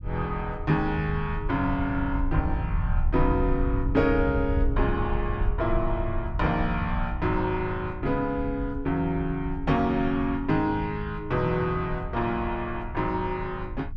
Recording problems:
low-frequency rumble; below 80 Hz, SNR 6 dB

